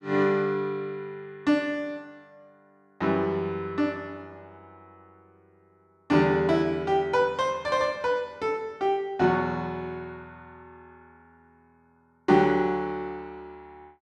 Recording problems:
none

